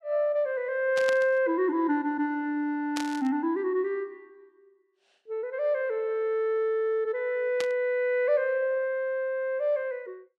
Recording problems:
static burst; at 1 s, at 3 s and at 7.5 s; peak -3 dB vs average level

